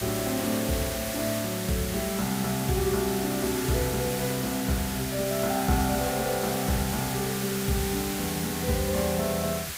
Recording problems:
hiss; SNR 4 dB

